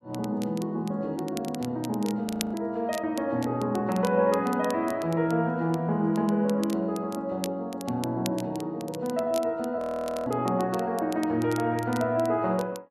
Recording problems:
crackle; vinyl, SNR 17 dB
audio freezing; at 2.5 s and at 10 s

